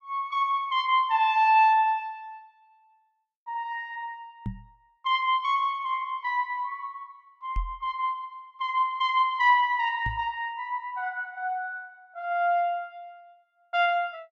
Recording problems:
knock on the microphone; at 4.5 s, at 7.5 s and at 10 s; peak -2 dB vs average level

